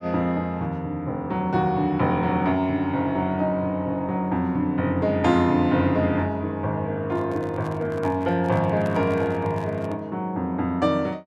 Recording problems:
handling noise; from 7 to 10 s; peak -10 dB vs average level

